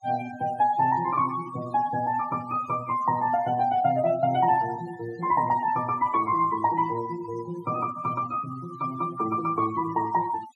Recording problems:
denoising artefacts; signal-to-artefact ratio 17 dB

